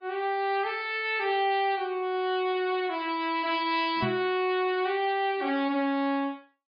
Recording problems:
lossy compression; MP3, log-spectral distance 2 dB, nothing above 4.6 kHz
microphone bump; at 4 s; peak -1 dB vs average level

